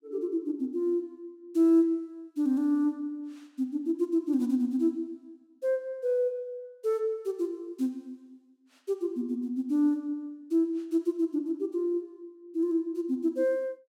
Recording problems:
none

